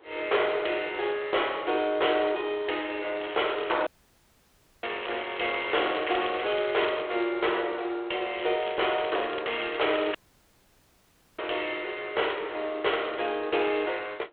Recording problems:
phone line; 320 Hz to 3.4 kHz, G.726
distortion; hard clipping, signal-to-distortion ratio 11 dB
wind noise; below 1.2 kHz, SNR 24 dB
crackling; 4 times, first at 3 s; loose cable, SNR 13 dB
audio cutting out; at 4 s for 1 s and at 10 s for 1 s

